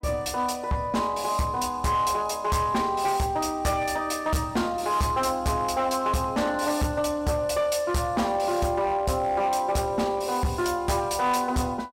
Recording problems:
distortion; hard clipping, uneven, signal-to-distortion ratio 11 dB

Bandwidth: 16 kHz